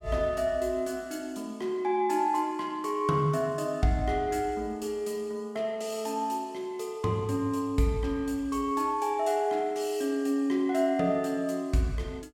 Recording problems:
none

